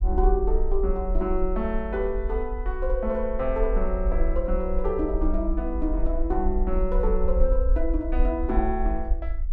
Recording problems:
rumble; below 48 Hz, SNR 1 dB

